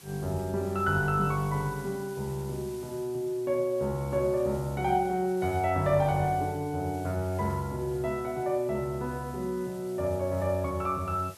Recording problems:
background hiss; slope -1 dB per octave, SNR 21 dB

